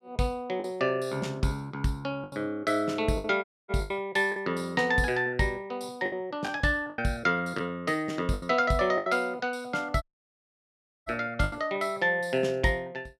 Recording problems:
lost packets; 6% of the sound replaced, filled with the last packet
audio cutting out; at 3.5 s and at 10 s for 1 s

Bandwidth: 15.5 kHz